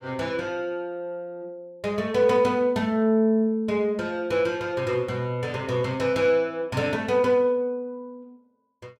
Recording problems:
none

